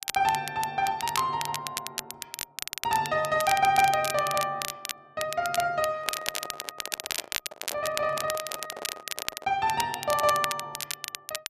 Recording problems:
crackle; vinyl, SNR 7 dB
handling noise; from 6 to 9.5 s; peak -7 dB vs average level

